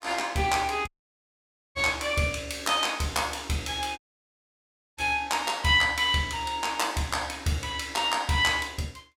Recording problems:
audio cutting out; at 1 s for 1 s and at 4 s for 1 s

